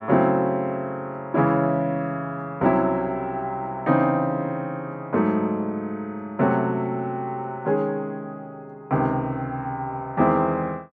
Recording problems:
none

